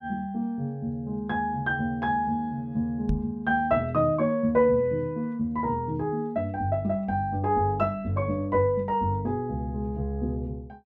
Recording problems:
microphone bump; at 3 s; peak +2 dB vs average level

